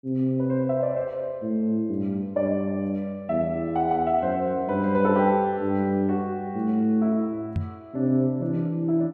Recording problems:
microphone thump; at 7.5 s; peak 0 dB vs average level

